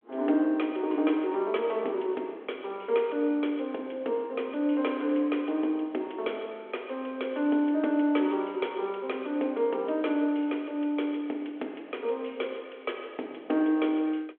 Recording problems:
phone line; 240 Hz to 3.5 kHz, G.726

